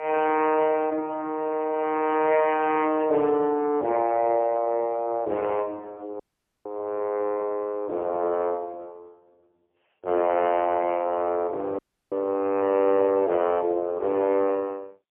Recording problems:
phone line; 300 Hz to 3.1 kHz, AMR-NB, then MP3
audio cutting out; at 6 s and at 12 s

